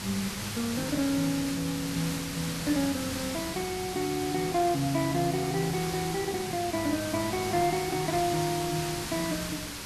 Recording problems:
hiss; slope -1 dB per octave, SNR 5 dB

